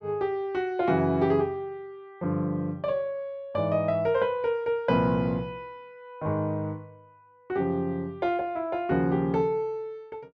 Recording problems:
none

